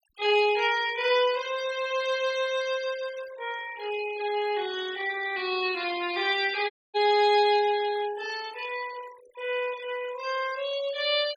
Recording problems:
denoising artefacts; signal-to-artefact ratio 16 dB
dropout; at 6.5 s

